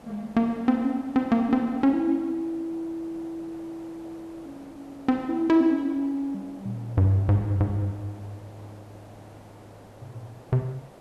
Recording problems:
background hiss; SNR 23 dB

